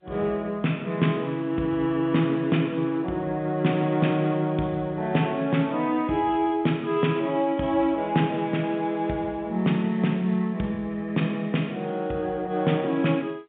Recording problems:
telephone audio; 130 Hz to 3.7 kHz, G.711

